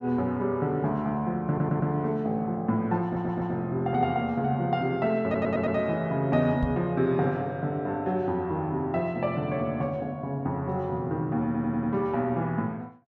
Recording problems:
audio stuttering; 4 times, first at 1.5 s
microphone thump; at 6.5 s; peak +1 dB vs average level

